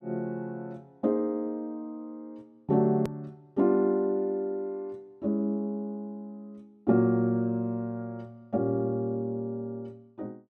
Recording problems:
click at an edit; at 3 s

